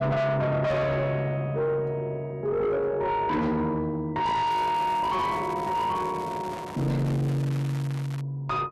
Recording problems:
distorted audio; soft clipping, signal-to-distortion ratio 6 dB
crackle; from 4.5 to 8 s; loose cable, SNR 17 dB

